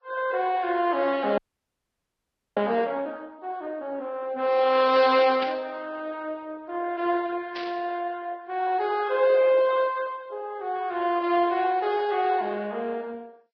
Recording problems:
lossy compression; MP2, then Vorbis, log-spectral distance 3 dB, nothing above 5 kHz
frozen audio; at 1.5 s for 1 s
burst of static; at 5.5 s and at 7.5 s; peak -6 dB vs average level

